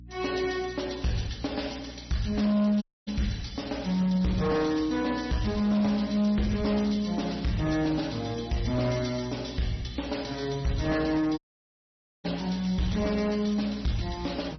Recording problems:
codec artefacts; MP3, then MP3, log-spectral distance 8 dB, nothing above 5.8 kHz
distortion; hard clipping, signal-to-distortion ratio 11 dB
hum; 60 Hz, harmonics up to 300 Hz, SNR 19 dB
audio cutting out; at 3 s and at 11 s for 1 s

